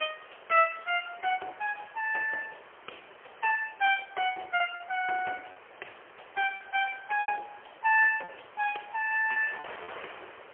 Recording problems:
phone line; 370 Hz to 3.2 kHz, AMR-NB, then MP3
wind noise; below 2.3 kHz, SNR 20 dB
lost packets; 5% of the sound replaced, filled with repeated pitch periods

